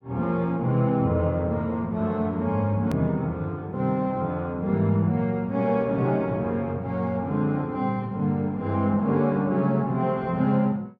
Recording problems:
edit click; at 3 s

